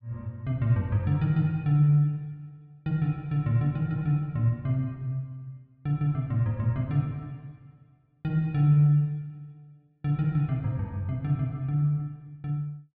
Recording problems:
low-pass filter; nothing above 5.5 kHz

